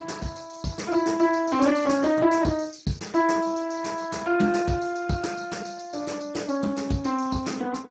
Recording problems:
lossy compression; Speex, log-spectral distance 5 dB, nothing above 7.3 kHz

